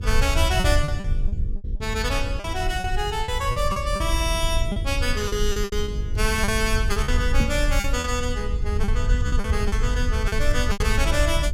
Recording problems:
hum; 50 Hz, harmonics up to 500 Hz, SNR 14 dB
low-frequency rumble; below 76 Hz, SNR 1 dB
packet loss; 10% of the sound replaced, filled with repeated pitch periods
microphone bump; at 7.5 s; peak +5 dB vs average level

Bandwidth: 16.5 kHz